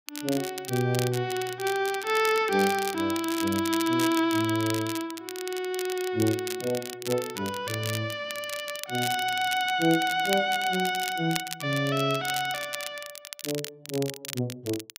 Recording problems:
crackling; vinyl, SNR 9 dB

